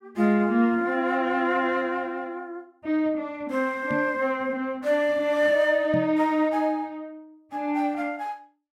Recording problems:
microphone thump; at 4 s and at 6 s; peak -2 dB vs average level

